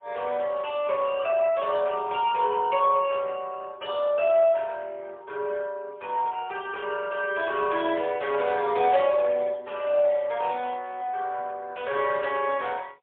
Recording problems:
phone line; 340 Hz to 3.5 kHz, AMR-NB, then MP3

